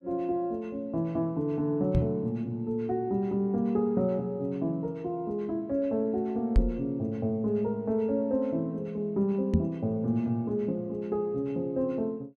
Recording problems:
knock on the microphone; at 2 s, at 6.5 s and at 9.5 s; peak +8 dB vs average level

